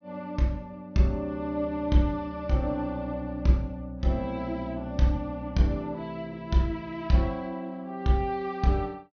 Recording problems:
treble cut off; nothing above 6.4 kHz

